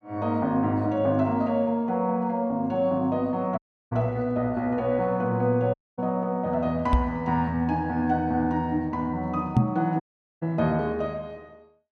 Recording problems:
audio cutting out; at 3.5 s, at 5.5 s and at 10 s
microphone thump; at 7 s and at 9.5 s; peak +9 dB vs average level

